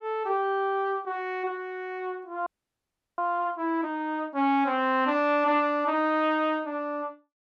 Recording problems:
audio freezing; at 2.5 s for 0.5 s

